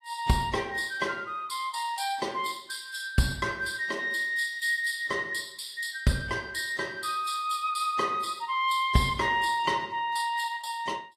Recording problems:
lossy codec; AAC, log-spectral distance 3 dB, nothing above 15.1 kHz

